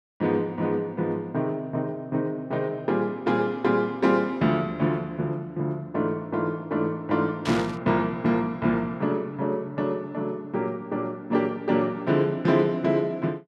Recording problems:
static burst; at 7.5 s; peak -4 dB vs average level

